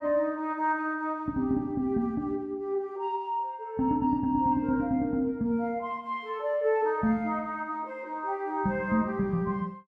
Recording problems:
none

